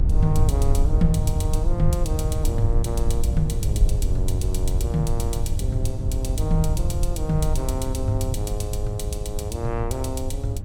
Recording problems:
mains hum; 50 Hz, harmonics up to 600 Hz, SNR 6 dB
rumble; below 76 Hz, SNR -3 dB

